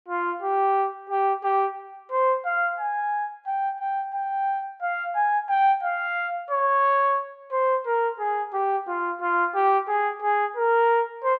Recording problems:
none

